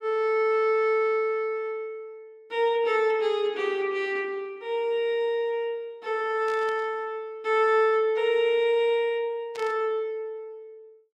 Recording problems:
static burst; at 6.5 s and at 9.5 s; peak -13 dB vs average level

